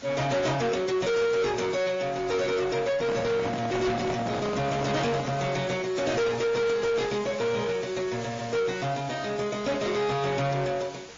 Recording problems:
lossy compression; MP3, then AAC, log-spectral distance 6 dB
distorted audio; soft clipping, signal-to-distortion ratio 7 dB
hiss; slope -2 dB per octave, SNR 18 dB
microphone handling noise; from 3 to 5.5 s; peak 0 dB vs average level

